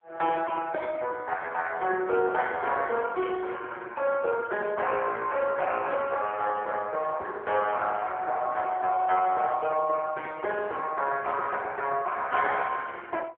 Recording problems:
telephone audio; 340 Hz to 3.6 kHz, AMR-NB

